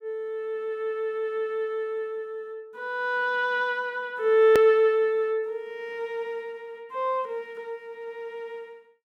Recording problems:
hard cut with a click; at 4.5 s

